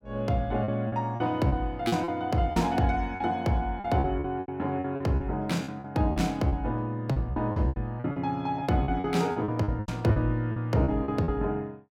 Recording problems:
packet loss; 14% of the sound replaced, filled with repeated pitch periods

